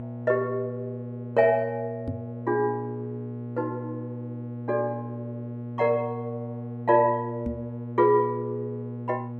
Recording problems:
hum; 60 Hz, harmonics up to 1.1 kHz, SNR 9 dB
knock on the microphone; at 2 s and at 7.5 s; peak -2 dB vs average level

